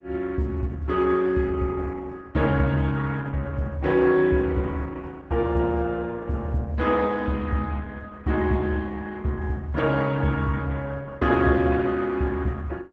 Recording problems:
lossy compression; Opus, log-spectral distance 3 dB

